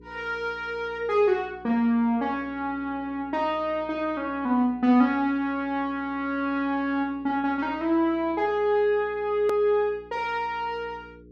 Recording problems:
hum; 60 Hz, harmonics up to 480 Hz, SNR 24 dB
edit click; at 9.5 s

